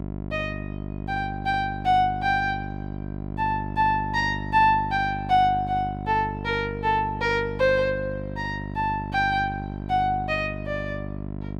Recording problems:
hum; 50 Hz, harmonics up to 1.1 kHz, SNR 9 dB

